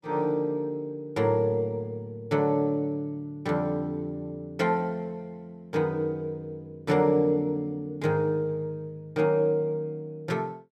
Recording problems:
none

